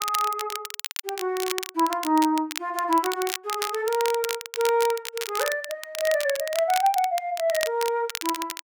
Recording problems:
crackle; vinyl, SNR 8 dB

